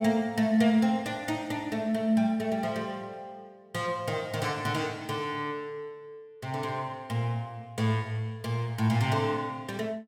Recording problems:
none

